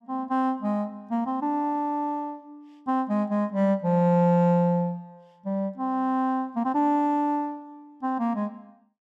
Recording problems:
none

